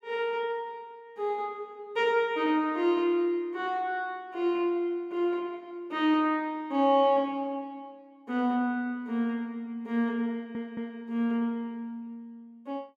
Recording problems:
stutter; at 10 s

